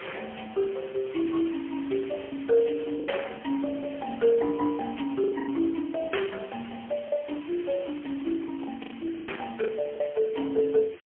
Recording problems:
phone line; 240 Hz to 3.2 kHz, AMR-NB, then MP3
background hiss; SNR 20 dB
lost packets; 6% of the sound replaced, filled with the last packet

